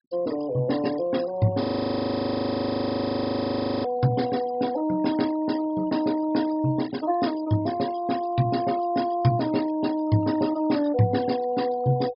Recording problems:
treble missing; nothing above 5.5 kHz
noise reduction artefacts; signal-to-artefact ratio 17 dB
frozen audio; at 1.5 s for 2 s

